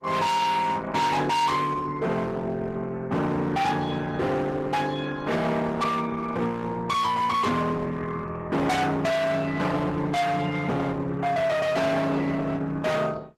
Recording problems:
lossy codec; Opus, log-spectral distance 3 dB, nothing above 13.7 kHz
distorted audio; hard clipping, signal-to-distortion ratio 6 dB

